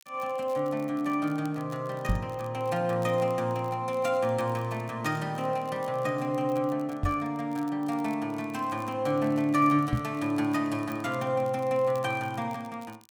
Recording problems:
crackling; vinyl, SNR 27 dB
knock on the microphone; at 2 s, at 7 s and at 10 s; peak +5 dB vs average level

